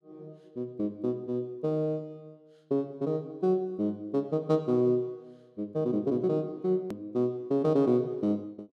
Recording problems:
edit click; at 7 s

